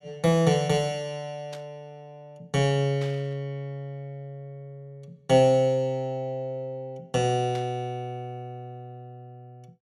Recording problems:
burst of static; at 1.5 s, at 3 s and at 7.5 s; peak -12 dB vs average level

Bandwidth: 13.5 kHz